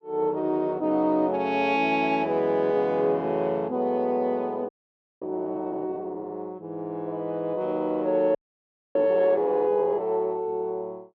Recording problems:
audio freezing; at 4.5 s for 0.5 s and at 8.5 s for 0.5 s

